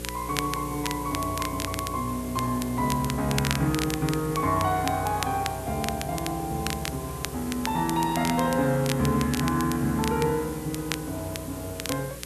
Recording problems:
hum; 60 Hz, harmonics up to 540 Hz, SNR 13 dB
background hiss; slope 0 dB per octave, SNR 14 dB
crackle; vinyl, SNR 9 dB

